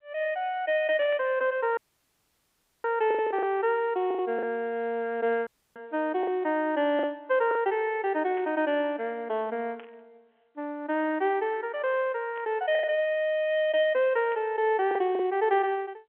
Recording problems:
telephone audio; 260 Hz to 3.3 kHz, G.711
packet loss; 4% of the sound replaced, filled with the last packet
burst of static; 5 times, first at 1 s; peak -16 dB vs average level
dropout; at 2 s for 1 s and at 5.5 s

